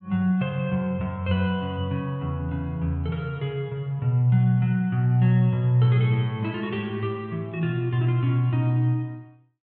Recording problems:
none

